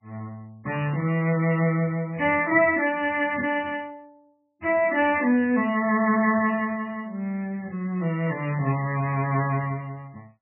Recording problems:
lossy compression; MP3, log-spectral distance 2 dB

